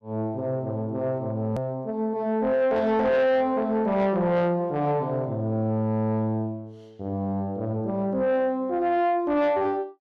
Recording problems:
distortion; soft clipping, signal-to-distortion ratio 11 dB
click at an edit; at 1.5 s

